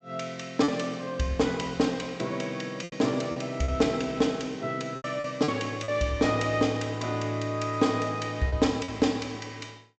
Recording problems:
low-pass filter; nothing above 8 kHz
packet loss; 5% of the sound replaced, filled with repeated pitch periods

